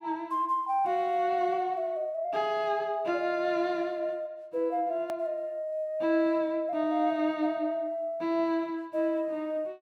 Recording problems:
edit click; at 5 s

